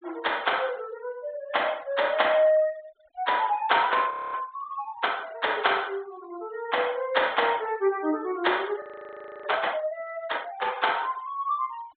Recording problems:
treble missing; nothing above 4 kHz
noise reduction artefacts; signal-to-artefact ratio 24 dB
frozen audio; at 4 s and at 9 s for 0.5 s

